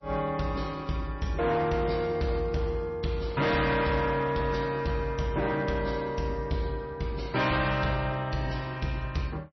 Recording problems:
lossy compression; MP3, log-spectral distance 3 dB, nothing above 5.8 kHz
distorted audio; hard clipping, signal-to-distortion ratio 11 dB

